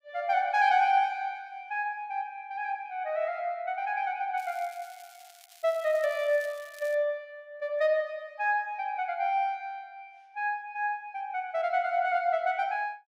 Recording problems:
crackle; from 4.5 to 7 s; loose cable, SNR 23 dB

